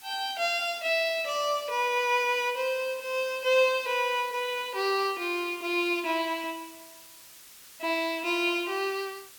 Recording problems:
hiss; slope +2 dB per octave, SNR 20 dB

